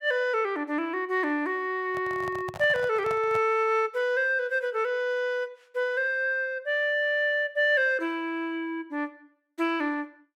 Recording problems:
handling noise; from 2 to 3.5 s; peak -8 dB vs average level

